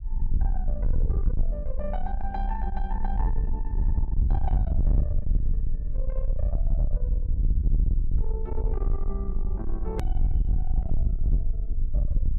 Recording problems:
distortion; soft clipping, signal-to-distortion ratio 6 dB
rumble; below 56 Hz, SNR -10 dB
click at an edit; at 10 s

